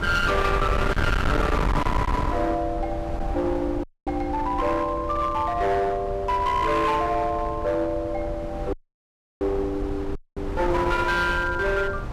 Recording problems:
distortion; hard clipping, uneven, signal-to-distortion ratio 8 dB
wind noise; below 620 Hz, SNR 5 dB
audio cutting out; at 4 s, at 8.5 s for 0.5 s and at 10 s

